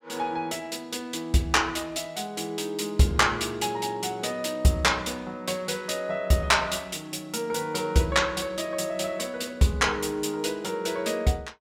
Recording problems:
none

